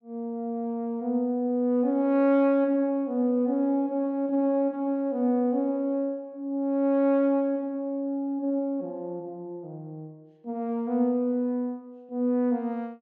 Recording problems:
none

